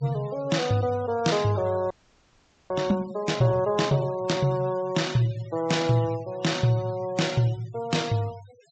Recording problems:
treble cut off; nothing above 8 kHz
noise reduction artefacts; signal-to-artefact ratio 19 dB
audio freezing; at 2 s for 1 s

